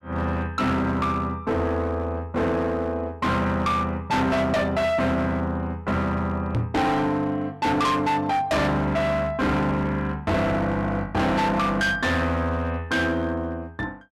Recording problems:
distorted audio; hard clipping, signal-to-distortion ratio 6 dB
knock on the microphone; at 6.5 s; peak +3 dB vs average level

